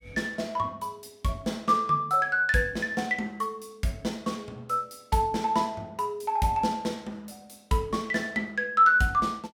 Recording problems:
none

